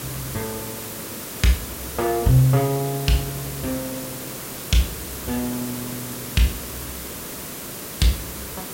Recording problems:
background hiss; SNR 7 dB

